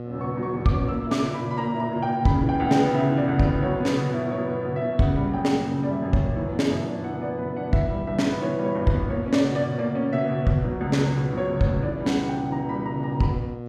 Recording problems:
hum; 60 Hz, harmonics up to 1.2 kHz, SNR 12 dB

